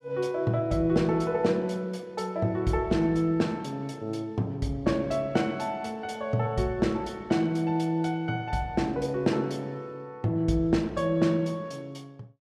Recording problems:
none

